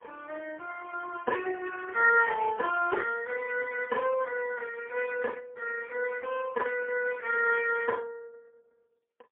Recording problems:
phone line; 260 Hz to 2.6 kHz, AMR-NB, then MP3

